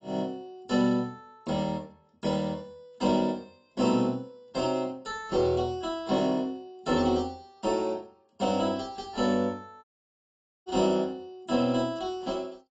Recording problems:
codec artefacts; AAC, log-spectral distance 2 dB, nothing above 7.3 kHz
audio cutting out; at 10 s for 1 s

